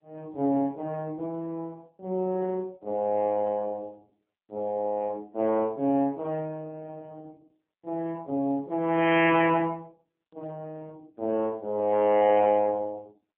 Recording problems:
phone line; 240 Hz to 3.3 kHz, AMR-NB

